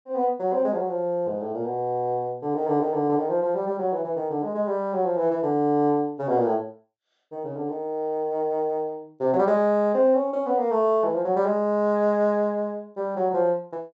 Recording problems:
treble missing; nothing above 8 kHz

